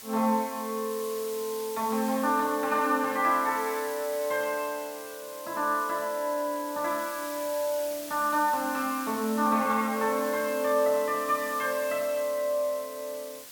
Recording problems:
hiss; slope +1 dB per octave, SNR 12 dB

